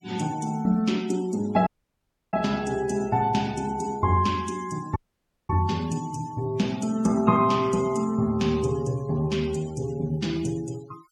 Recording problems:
denoising artefacts; signal-to-artefact ratio 22 dB
audio cutting out; at 1.5 s for 0.5 s and at 5 s for 0.5 s

